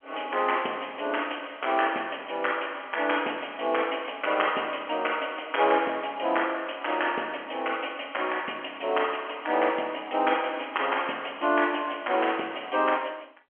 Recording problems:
phone line; 240 Hz to 3.3 kHz, G.711

